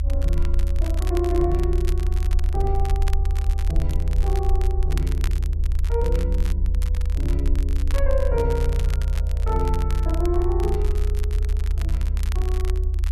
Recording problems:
low-frequency rumble; below 72 Hz, strongest tone 42 Hz, SNR -6 dB
crackle; vinyl, SNR 12 dB

